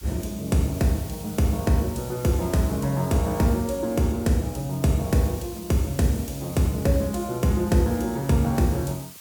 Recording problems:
background hiss; SNR 17 dB

